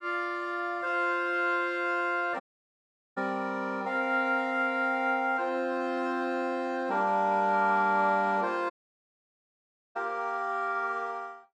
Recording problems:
audio cutting out; at 2.5 s for 1 s and at 8.5 s for 1.5 s

